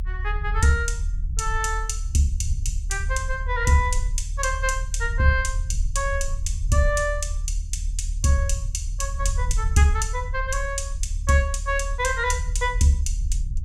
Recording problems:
low-frequency rumble; below 72 Hz, strongest tone 38 Hz, SNR 4 dB

